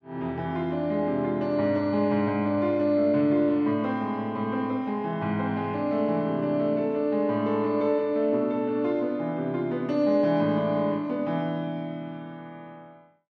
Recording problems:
none

